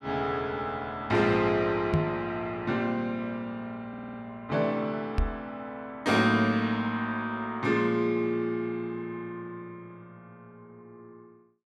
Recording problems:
microphone bump; at 2 s and at 5 s; peak +7 dB vs average level
stutter; at 4 s

